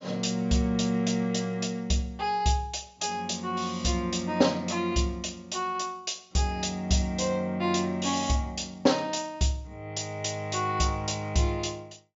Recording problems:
low-pass filter; nothing above 7.4 kHz

